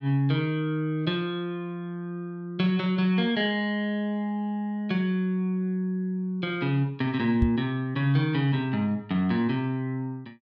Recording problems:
microphone bump; at 7.5 s; peak +6 dB vs average level

